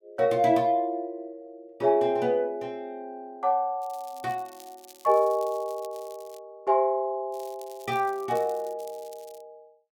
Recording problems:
crackling; from 4 to 6.5 s and from 7.5 to 9.5 s; loose cable, SNR 24 dB

